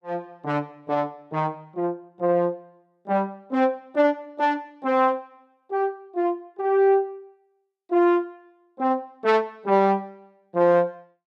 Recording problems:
none

